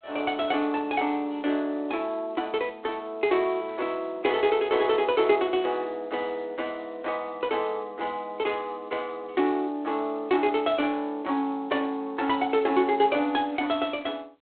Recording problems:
phone line; 240 Hz to 3.5 kHz, G.726

